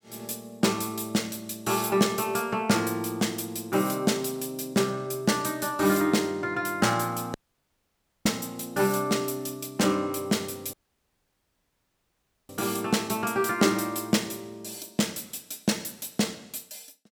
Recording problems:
audio cutting out; at 7.5 s for 1 s and at 11 s for 2 s

